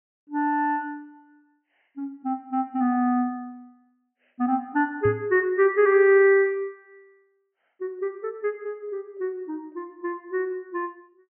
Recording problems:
treble cut off; nothing above 3 kHz
microphone bump; at 5 s; peak -1 dB vs average level

